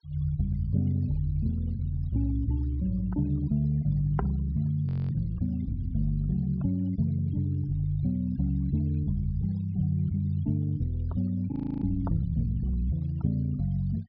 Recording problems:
treble missing; nothing above 5.5 kHz
noise reduction artefacts; signal-to-artefact ratio 28 dB
audio freezing; at 5 s and at 12 s

